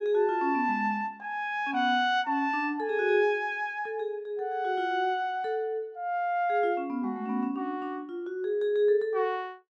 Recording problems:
none

